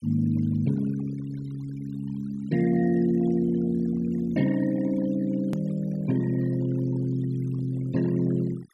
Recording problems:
noise reduction artefacts; signal-to-artefact ratio 20 dB
click at an edit; at 5.5 s

